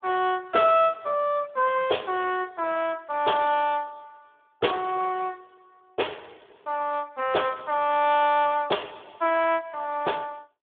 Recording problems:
telephone audio; 320 Hz to 3.5 kHz, Speex

